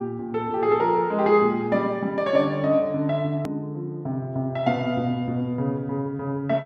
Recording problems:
edit click; at 3.5 s

